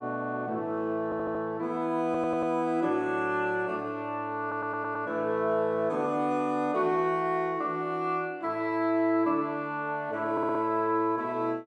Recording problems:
audio stuttering; 4 times, first at 1 s

